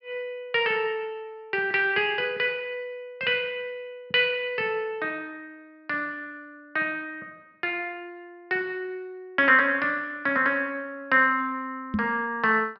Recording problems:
treble cut off; nothing above 5.4 kHz
microphone thump; at 12 s; peak +2 dB vs average level

